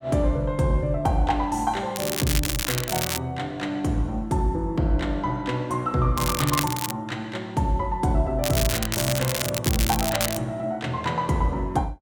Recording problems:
crackling; from 2 to 3 s, at 6 s and from 8.5 to 10 s; loose cable, SNR 2 dB

